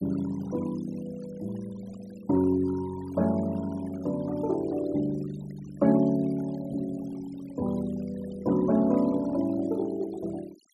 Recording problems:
noise reduction artefacts; signal-to-artefact ratio 20 dB

